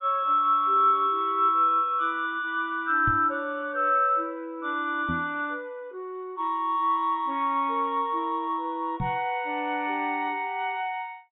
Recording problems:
treble missing; nothing above 4 kHz
knock on the microphone; at 3 s, at 5 s and at 9 s; peak -2 dB vs average level

